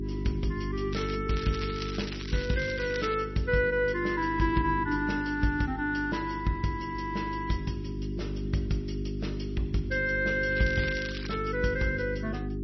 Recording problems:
lossy codec; MP3, log-spectral distance 4 dB, nothing above 5.8 kHz
hum; 50 Hz, harmonics up to 400 Hz, SNR 6 dB
crackle; at 1 s, from 1.5 to 3 s and at 11 s; loose cable, SNR 11 dB

